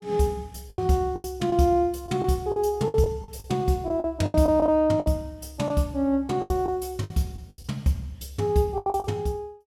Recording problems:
packet loss; 12% of the sound replaced, filled with the last packet

